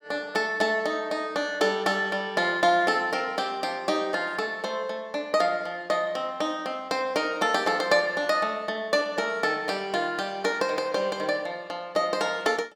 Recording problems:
none

